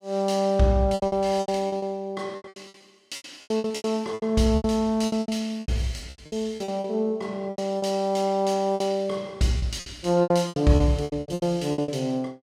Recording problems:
packet loss; 20% of the sound replaced, filled with repeated pitch periods

